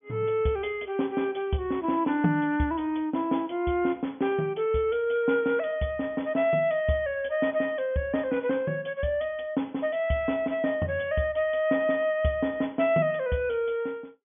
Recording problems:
treble cut off; nothing above 3.4 kHz

